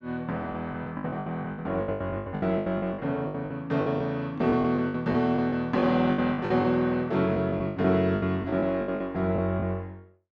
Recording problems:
packet loss; 17% of the sound replaced, filled with the last packet

